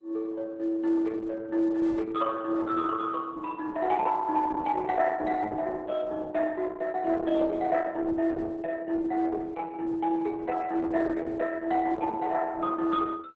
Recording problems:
lossy codec; MP2, then Opus, log-spectral distance 4 dB, nothing above 7.8 kHz

